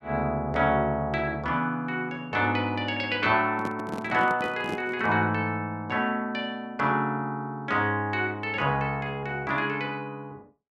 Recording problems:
microphone handling noise; from 3.5 to 5 s; peak -3 dB vs average level

